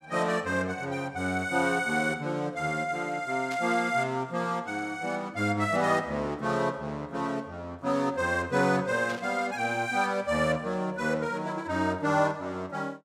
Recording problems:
static burst; at 3.5 s and at 9 s; peak -9 dB vs average level

